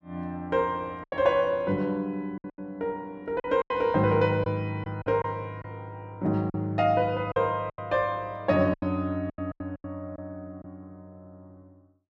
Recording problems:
packet loss; 9% of the sound replaced, filled with silence

